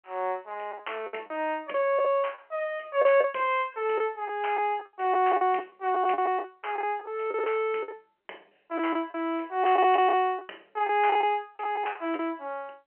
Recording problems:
telephone audio; 260 Hz to 3.1 kHz, G.711
lost packets; 8% of the sound replaced, filled with the last packet

